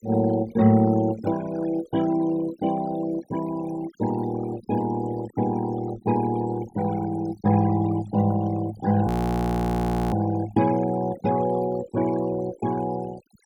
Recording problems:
noise reduction artefacts; signal-to-artefact ratio 16 dB
audio freezing; at 9 s for 1 s

